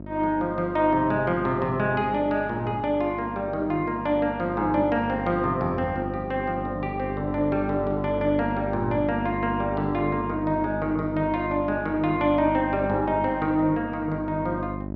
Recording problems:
hum; 50 Hz, harmonics up to 950 Hz, SNR 9 dB

